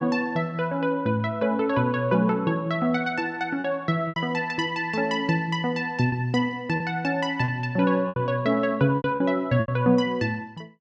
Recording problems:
packet loss; 5% of the sound replaced, filled with repeated pitch periods

